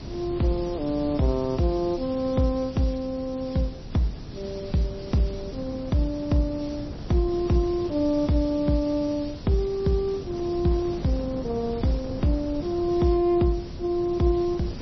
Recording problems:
lossy compression; MP3, log-spectral distance 6 dB, nothing above 5.8 kHz
background hiss; slope +3 dB per octave, SNR 21 dB
wind noise; below 290 Hz, SNR 12 dB

